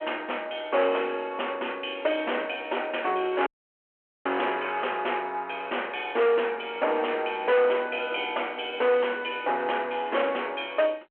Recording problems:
phone line; 370 Hz to 3.2 kHz, G.726
distortion; hard clipping, signal-to-distortion ratio 8 dB
audio cutting out; at 3.5 s for 1 s

